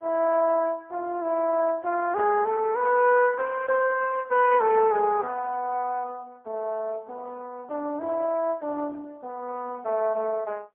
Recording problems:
telephone audio; 300 Hz to 2.6 kHz, AMR-NB, then MP3

